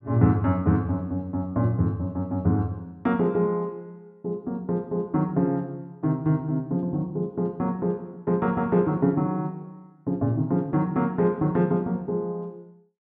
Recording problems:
none

